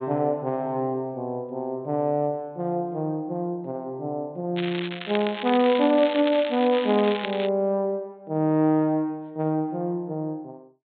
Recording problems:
low-pass filter; nothing above 4 kHz
crackle; from 4.5 to 7.5 s; loose cable, SNR 9 dB

